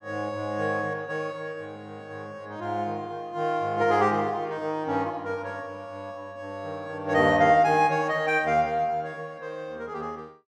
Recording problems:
none

